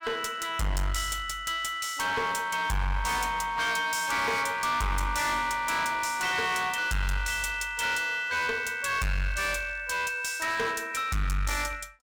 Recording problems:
distorted audio; hard clipping, uneven, signal-to-distortion ratio 5 dB

